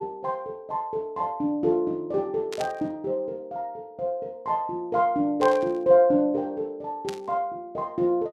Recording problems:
static burst; at 2.5 s, at 5.5 s and at 7 s; peak -6 dB vs average level

